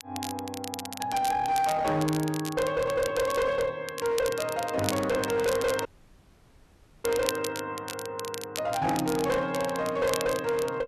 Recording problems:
distorted audio; hard clipping, uneven, signal-to-distortion ratio 10 dB
crackle; vinyl, SNR 10 dB
audio cutting out; at 6 s for 1 s

